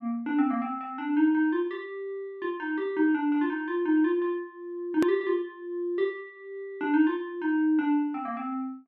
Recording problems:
click at an edit; at 5 s

